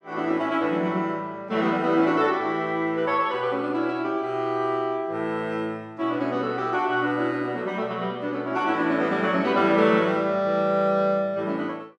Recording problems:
none

